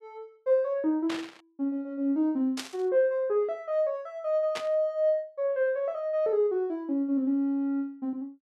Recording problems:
burst of static; at 1 s, at 2.5 s and at 4.5 s; peak -3 dB vs average level

